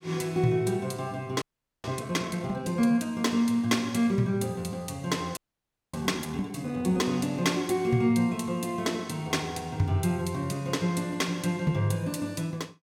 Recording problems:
audio freezing; at 1.5 s and at 5.5 s for 0.5 s

